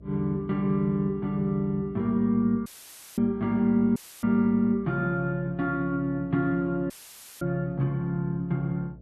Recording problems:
hum; 60 Hz, harmonics up to 660 Hz, SNR 23 dB
audio cutting out; at 2.5 s for 0.5 s, at 4 s and at 7 s for 0.5 s; filled with static

